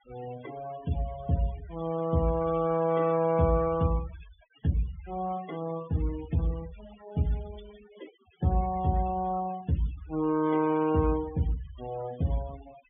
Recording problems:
treble cut off; nothing above 3.5 kHz
noise reduction artefacts; signal-to-artefact ratio 19 dB

